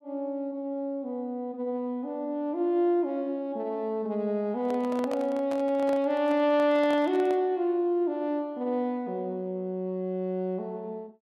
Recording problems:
handling noise; from 4.5 to 7.5 s; peak -5 dB vs average level

